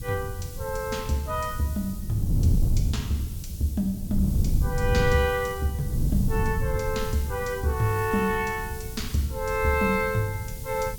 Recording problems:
hiss; SNR 15 dB
wind on the microphone; below 130 Hz, SNR 3 dB

